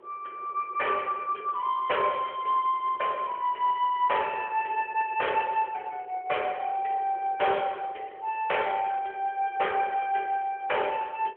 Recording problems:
telephone audio; 340 Hz to 3.3 kHz, AMR-NB
wind noise; below 630 Hz, SNR 22 dB

